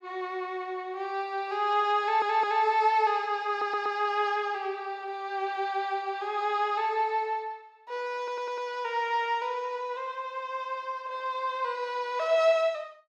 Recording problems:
stutter; at 2 s, at 3.5 s and at 8 s

